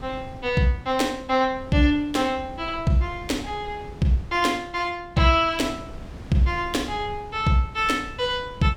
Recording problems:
wind noise; below 240 Hz, SNR 18 dB

